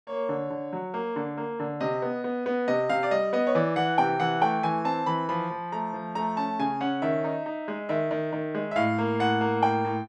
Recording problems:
none

